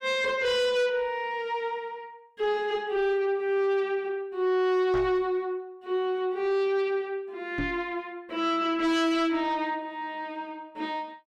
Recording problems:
distorted audio; soft clipping, signal-to-distortion ratio 10 dB
knock on the microphone; at 5 s and at 7.5 s; peak 0 dB vs average level

